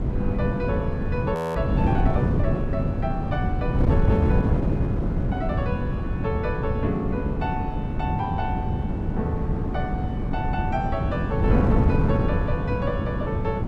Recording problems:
wind on the microphone; below 210 Hz, SNR -5 dB
frozen audio; at 1.5 s

